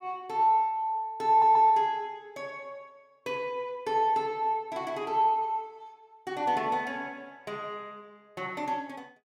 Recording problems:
audio stuttering; at 1.5 s

